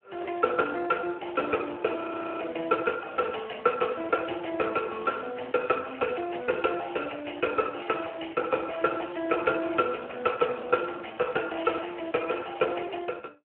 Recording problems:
telephone audio; 280 Hz to 2.6 kHz, Speex
audio freezing; at 2 s

